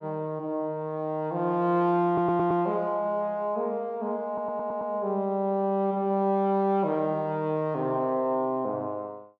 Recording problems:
audio stuttering; at 2 s and at 4.5 s

